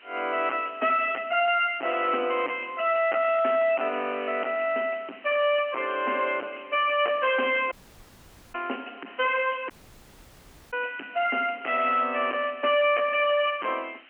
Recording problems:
telephone audio; 220 Hz to 3.1 kHz, G.711
distortion; hard clipping, signal-to-distortion ratio 7 dB
hiss; SNR 25 dB
dropout; at 7.5 s for 1 s and at 9.5 s for 1 s

